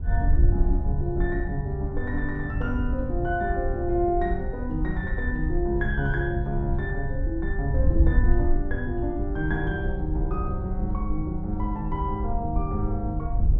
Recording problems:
wind noise; below 72 Hz, SNR 0 dB

